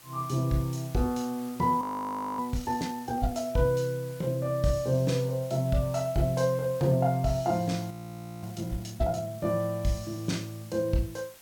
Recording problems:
hiss; slope -1 dB per octave, SNR 20 dB
audio freezing; at 2 s for 0.5 s and at 8 s for 0.5 s

